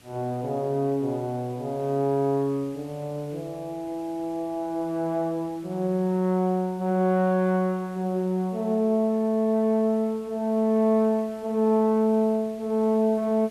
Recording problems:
hiss; SNR 27 dB

